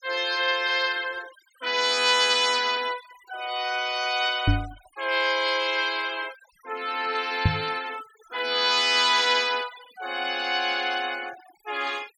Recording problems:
noise reduction artefacts; signal-to-artefact ratio 19 dB
microphone thump; at 4.5 s and at 7.5 s; peak +6 dB vs average level

